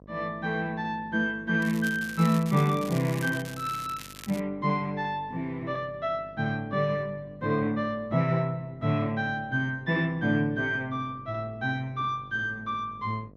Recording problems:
electrical hum; 50 Hz, harmonics up to 1.1 kHz, SNR 23 dB
crackling; from 1.5 to 4.5 s; loose cable, SNR 15 dB

